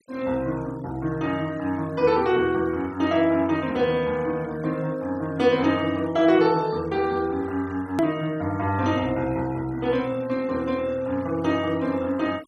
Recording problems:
noise reduction artefacts; signal-to-artefact ratio 23 dB
hard cut with a click; at 8 s

